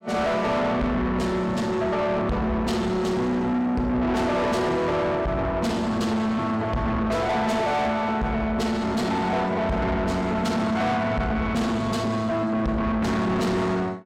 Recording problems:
distortion; soft clipping, signal-to-distortion ratio 7 dB

